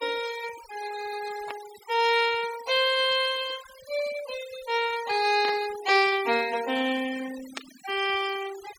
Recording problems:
denoising artefacts; signal-to-artefact ratio 15 dB
burst of static; at 1.5 s, at 5.5 s and at 7.5 s; peak -4 dB vs average level

